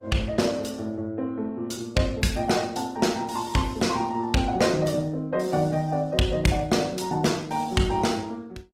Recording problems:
lossy codec; Opus, log-spectral distance 4 dB, nothing above 18.9 kHz

